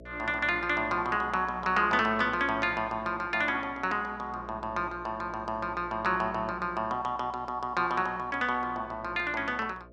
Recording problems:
electrical hum; 60 Hz, harmonics up to 660 Hz, SNR 20 dB

